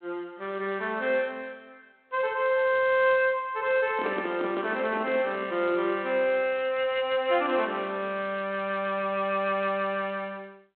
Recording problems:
phone line; 220 Hz to 3.5 kHz, G.726
microphone handling noise; from 4 to 5.5 s; peak -3 dB vs average level

